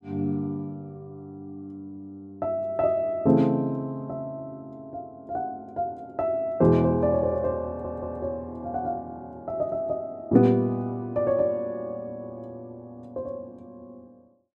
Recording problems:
audio stuttering; at 7.5 s

